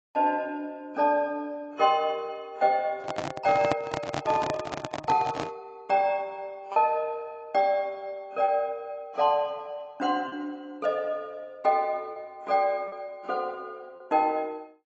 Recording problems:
lossy compression; AAC, log-spectral distance 2 dB
lost packets; 1.9% of the sound replaced, filled with repeated pitch periods
handling noise; from 3 to 5.5 s; peak +3 dB vs average level

